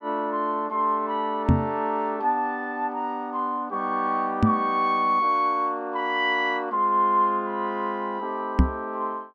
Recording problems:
microphone thump; at 1.5 s, at 4.5 s and at 8.5 s; peak +9 dB vs average level

